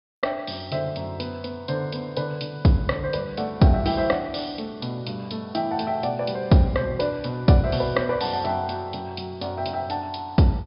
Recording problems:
treble missing; nothing above 5.5 kHz

